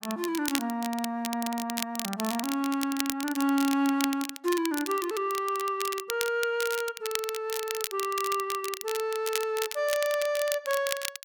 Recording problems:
crackling; vinyl, SNR 6 dB

